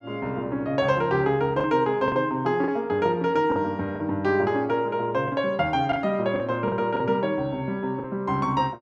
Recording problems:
lost packets; 5% of the sound replaced, filled with the last packet

